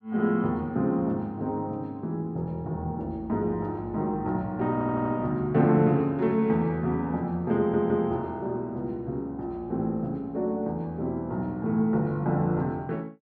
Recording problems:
stutter; at 4.5 s and at 7.5 s

